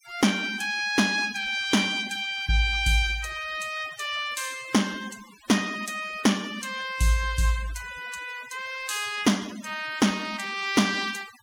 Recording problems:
noise reduction artefacts; signal-to-artefact ratio 18 dB

